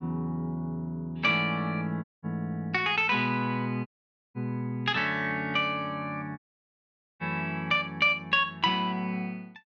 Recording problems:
dropout; at 2 s, at 4 s and at 6.5 s for 1 s

